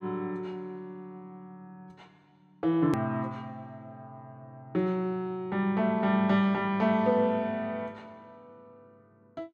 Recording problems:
edit click; at 3 s

